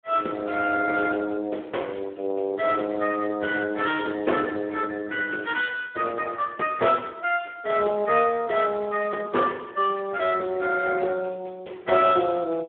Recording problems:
telephone audio; 260 Hz to 3.3 kHz, Speex

